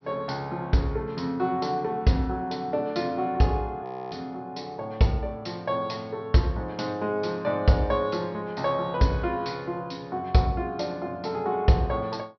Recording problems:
treble missing; nothing above 5.8 kHz
audio freezing; at 4 s

